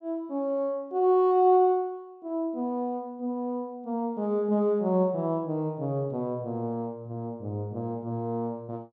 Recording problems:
none

